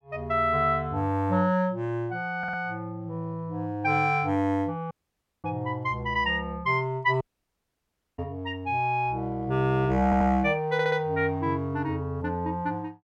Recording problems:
audio stuttering; at 2.5 s, at 10 s and at 11 s
dropout; at 5 s for 0.5 s and at 7 s for 1 s

